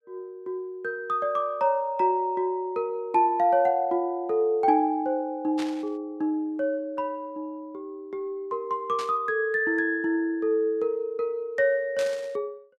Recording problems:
static burst; at 5.5 s, at 9 s and at 12 s; peak -7 dB vs average level

